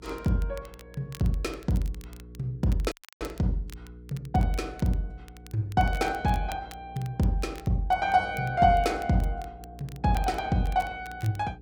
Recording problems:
mains hum; 60 Hz, harmonics up to 480 Hz, SNR 20 dB
crackle; vinyl, SNR 23 dB
audio cutting out; at 3 s

